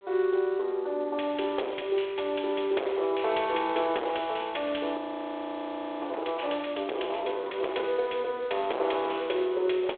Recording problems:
phone line; 340 Hz to 3.4 kHz, G.726
distorted audio; hard clipping, signal-to-distortion ratio 13 dB
frozen audio; at 5 s for 1 s

